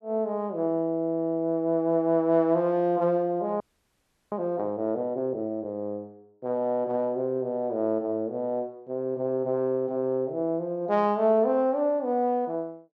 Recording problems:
audio freezing; at 3.5 s for 0.5 s

